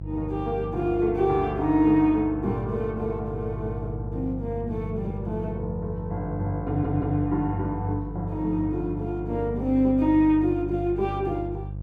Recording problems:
electrical hum; 50 Hz, harmonics up to 500 Hz, SNR 9 dB
stutter; at 6.5 s

